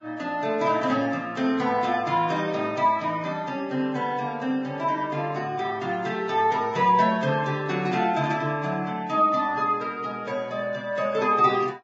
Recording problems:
codec artefacts; Vorbis, log-spectral distance 3 dB

